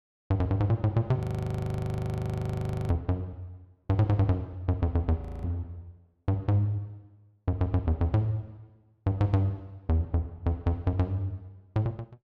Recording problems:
frozen audio; at 1 s for 1.5 s and at 5 s

